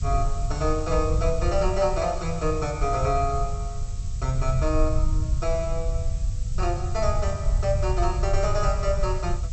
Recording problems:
low-pass filter; nothing above 8 kHz
hiss; SNR 18 dB
rumble; below 80 Hz, SNR 1 dB

